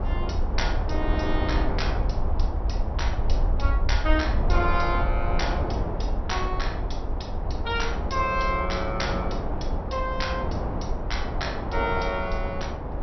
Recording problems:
low-pass filter; nothing above 5.8 kHz
rumble; below 62 Hz, SNR 1 dB
wind on the microphone; below 760 Hz, SNR 3 dB

